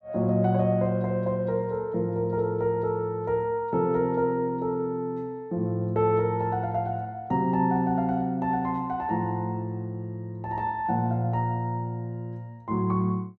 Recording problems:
none

